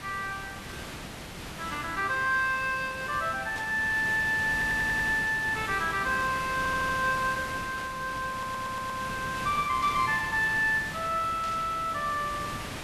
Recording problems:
background hiss; slope -3 dB per octave, SNR 10 dB
burst of static; 4 times, first at 3.5 s; peak -10 dB vs average level
audio stuttering; at 4.5 s, at 6.5 s and at 8.5 s

